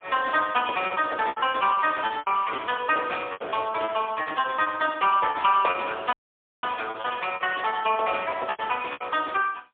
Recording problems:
telephone audio; 340 Hz to 3.5 kHz, AMR-NB, then MP3
packet loss; 15% of the sound replaced, filled with repeated pitch periods
dropout; at 6 s for 0.5 s

